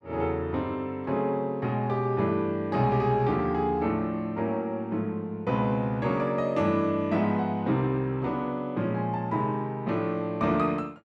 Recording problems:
none

